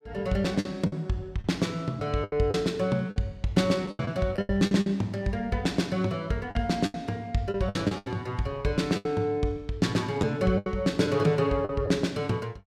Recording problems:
lost packets; 9% of the sound replaced, filled with the last packet

